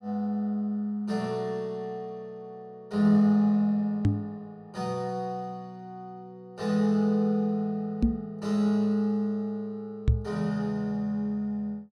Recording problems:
knock on the microphone; at 4 s, at 8 s and at 10 s; peak +8 dB vs average level

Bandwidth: 15 kHz